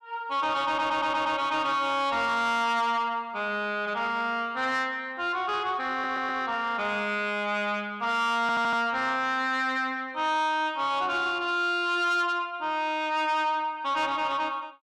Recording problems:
distorted audio; soft clipping, signal-to-distortion ratio 12 dB
audio stuttering; at 0.5 s, at 6 s and at 8.5 s

